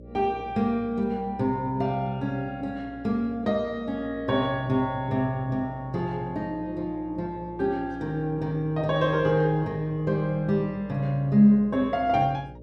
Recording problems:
hum; 60 Hz, harmonics up to 600 Hz, SNR 20 dB

